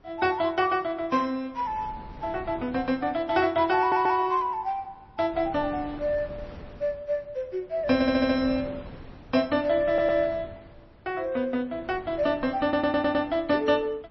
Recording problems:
codec artefacts; MP3, log-spectral distance 2 dB, nothing above 5 kHz
wind on the microphone; below 530 Hz, SNR 20 dB
audio stuttering; 4 times, first at 4 s

